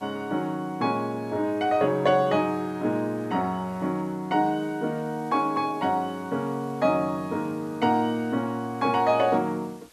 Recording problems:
hiss; slope -1 dB per octave, SNR 28 dB

